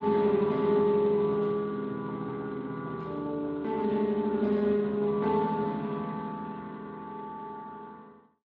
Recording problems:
lossy codec; Speex, log-spectral distance 2 dB

